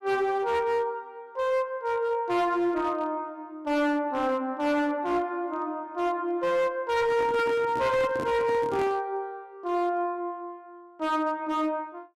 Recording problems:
distortion; hard clipping, signal-to-distortion ratio 10 dB
microphone handling noise; from 7 to 9 s; peak -5 dB vs average level

